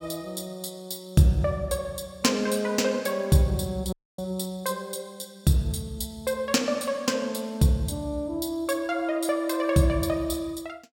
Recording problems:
dropout; at 4 s

